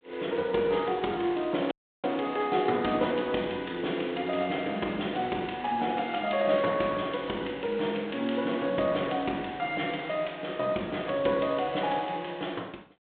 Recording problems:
telephone audio; 220 Hz to 3.6 kHz, G.726
dropout; at 1.5 s

